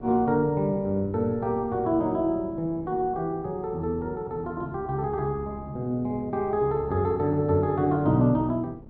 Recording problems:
wind noise; below 350 Hz, SNR 18 dB

